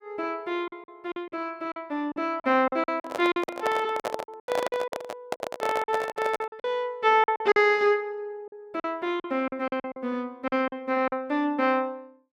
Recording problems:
lost packets; 12% of the sound replaced, filled with silence
microphone handling noise; from 3 to 6.5 s; peak +2 dB vs average level

